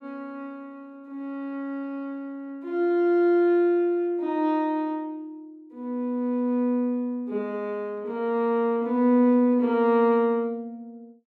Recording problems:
none

